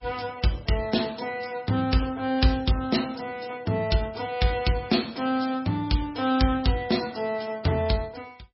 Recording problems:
lossy compression; MP3, log-spectral distance 5 dB, nothing above 5.5 kHz

